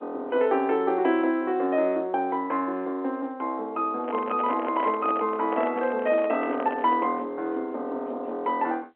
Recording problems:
phone line; 220 Hz to 3.3 kHz, G.711
microphone handling noise; from 4 to 7 s; peak -3 dB vs average level

